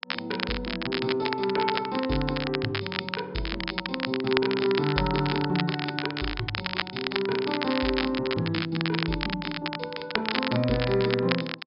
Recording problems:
low-pass filter; nothing above 5.5 kHz
crackling; vinyl, SNR 3 dB

